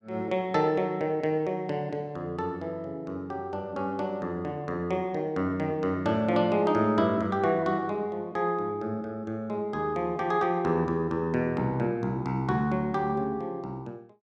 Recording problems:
none

